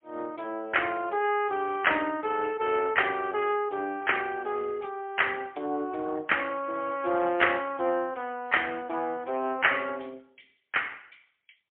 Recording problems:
phone line; 260 Hz to 3.2 kHz, AMR-NB, then MP3

